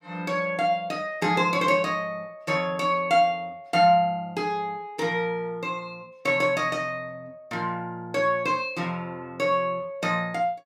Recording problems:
none

